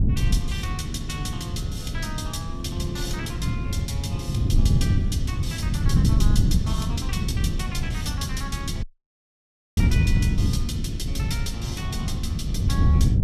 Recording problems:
wind on the microphone; below 150 Hz, SNR -7 dB
dropout; at 9 s for 1 s

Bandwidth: 14.5 kHz